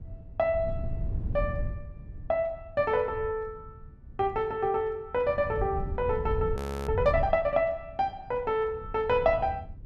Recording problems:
wind noise; below 110 Hz, SNR 8 dB
frozen audio; at 6.5 s

